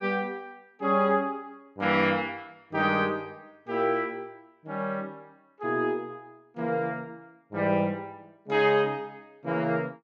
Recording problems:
none

